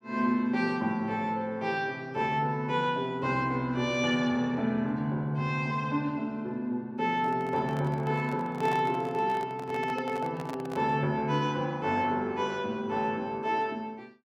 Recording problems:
handling noise; from 7 to 11 s; peak -4 dB vs average level

